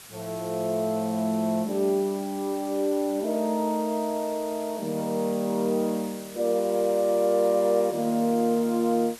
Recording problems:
hiss; slope 0 dB per octave, SNR 17 dB

